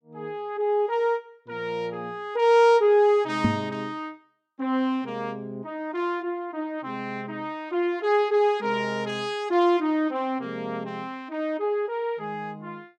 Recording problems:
knock on the microphone; at 3.5 s; peak +6 dB vs average level

